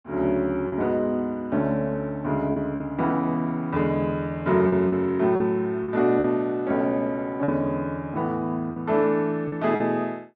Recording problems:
packet loss; 5% of the sound replaced, filled with repeated pitch periods

